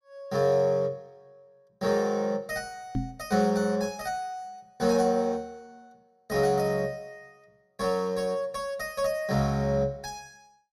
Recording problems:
microphone thump; at 3 s; peak +1 dB vs average level

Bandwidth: 14.5 kHz